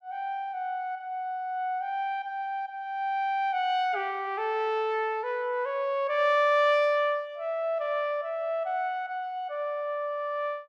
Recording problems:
none

